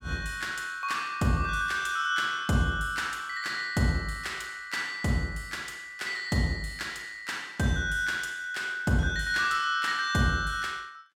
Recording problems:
none

